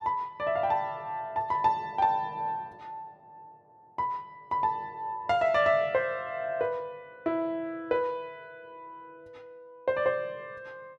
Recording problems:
none

